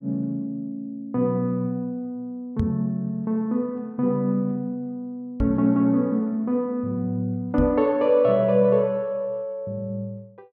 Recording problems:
microphone bump; at 2.5 s, at 5.5 s and at 7.5 s; peak +2 dB vs average level

